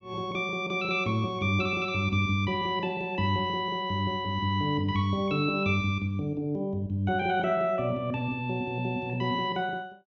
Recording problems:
low-pass filter; nothing above 8 kHz

